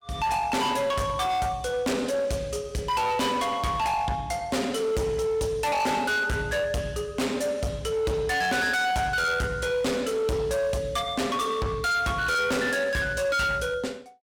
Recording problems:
distorted audio; hard clipping, uneven, signal-to-distortion ratio 7 dB

